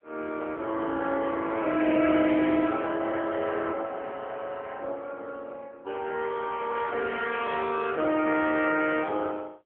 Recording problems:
phone line; 240 Hz to 3.5 kHz, AMR-NB

